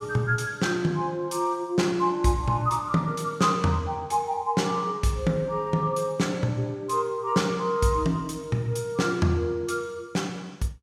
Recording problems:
none

